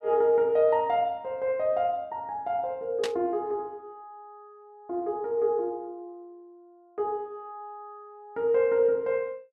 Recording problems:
burst of static; at 3 s; peak -2 dB vs average level

